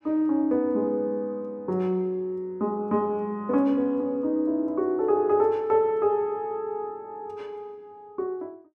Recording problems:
none

